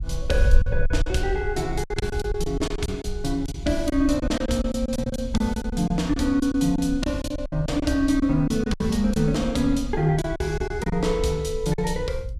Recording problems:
wind on the microphone; below 58 Hz, SNR 8 dB
lost packets; 11% of the sound replaced, filled with silence

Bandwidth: 14.5 kHz